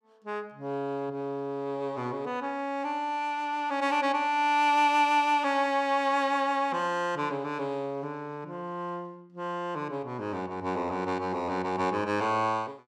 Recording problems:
none

